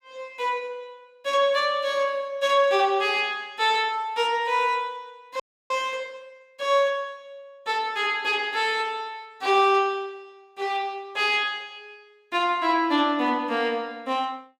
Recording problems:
audio freezing; at 5.5 s

